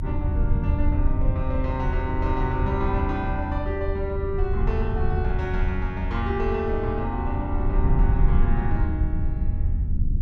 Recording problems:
low-frequency rumble; below 80 Hz, SNR -3 dB

